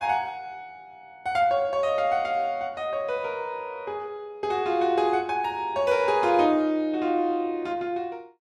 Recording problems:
none

